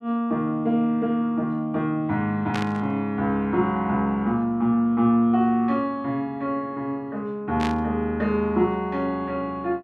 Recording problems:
static burst; at 2.5 s and at 7.5 s; peak -3 dB vs average level

